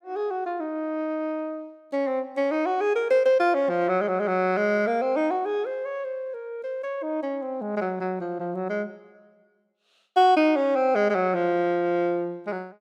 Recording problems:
none

